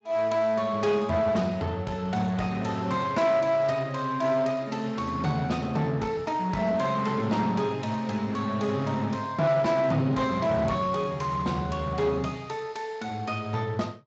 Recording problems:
codec artefacts; Speex, log-spectral distance 3 dB
distortion; hard clipping, uneven, signal-to-distortion ratio 11 dB

